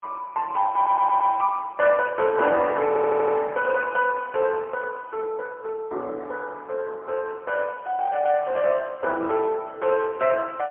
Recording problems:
phone line; 260 Hz to 3.1 kHz, AMR-NB, then MP3
audio stuttering; at 1 s and at 3 s

